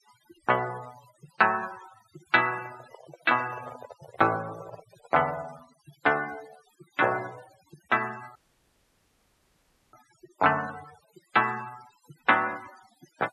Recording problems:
denoising artefacts; signal-to-artefact ratio 21 dB
microphone handling noise; from 2.5 to 5.5 s; peak -12 dB vs average level
audio cutting out; at 8.5 s for 1.5 s

